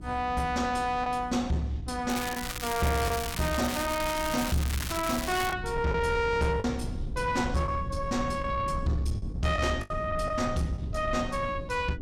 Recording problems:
distortion; soft clipping, signal-to-distortion ratio 11 dB
mains hum; 60 Hz, harmonics up to 360 Hz, SNR 16 dB
low-frequency rumble; below 150 Hz, SNR 10 dB
packet loss; 3% of the sound replaced, filled with the last packet
crackling; from 2 to 5.5 s; loose cable, SNR 6 dB

